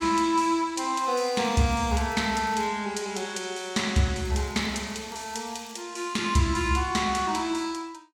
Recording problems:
crackling; from 1 to 2.5 s and from 4.5 to 6 s; loose cable, SNR 25 dB

